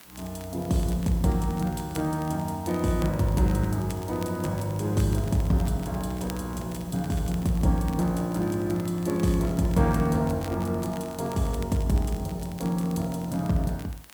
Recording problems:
hiss; slope -2 dB per octave, SNR 22 dB
crackling; vinyl, SNR 22 dB

